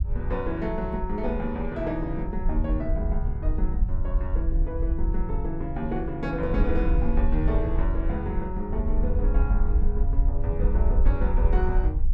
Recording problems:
rumble; below 58 Hz, SNR -3 dB

